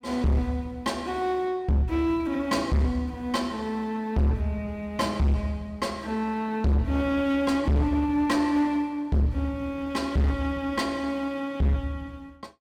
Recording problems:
distorted audio; hard clipping, uneven, signal-to-distortion ratio 6 dB

